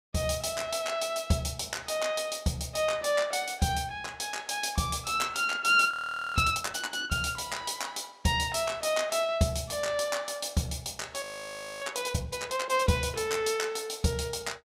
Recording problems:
frozen audio; at 6 s and at 11 s for 0.5 s

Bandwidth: 15.5 kHz